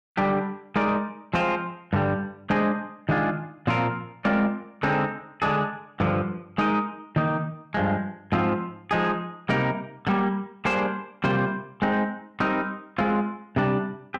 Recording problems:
distorted audio; soft clipping, signal-to-distortion ratio 11 dB

